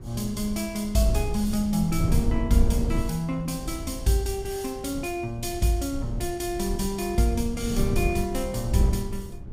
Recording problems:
wind on the microphone; below 110 Hz, SNR 5 dB

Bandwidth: 15.5 kHz